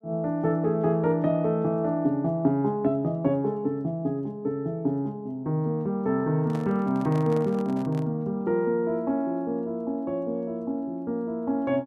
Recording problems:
microphone handling noise; from 6.5 to 8 s; peak -10 dB vs average level

